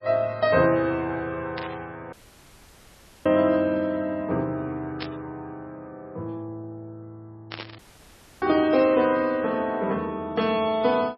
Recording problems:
lossy compression; MP3, log-spectral distance 2 dB, nothing above 4.5 kHz
burst of static; 4 times, first at 1.5 s; peak -5 dB vs average level
dropout; at 2 s for 1 s and at 8 s for 0.5 s

